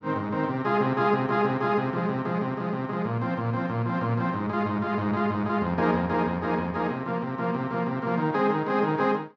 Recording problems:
none

